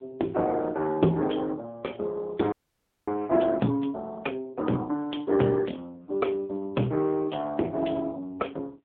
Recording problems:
phone line; 190 Hz to 3.9 kHz, AMR-NB
frozen audio; at 2.5 s for 0.5 s

